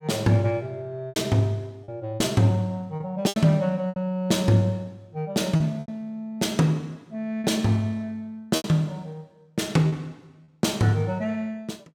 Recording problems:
packet loss; 6% of the sound replaced, filled with repeated pitch periods

